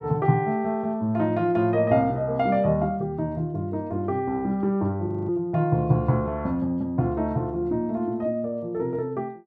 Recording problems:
audio freezing; at 5 s

